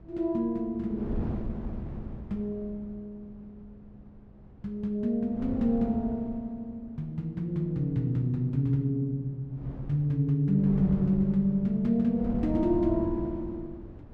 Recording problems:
wind on the microphone; below 220 Hz, SNR 11 dB

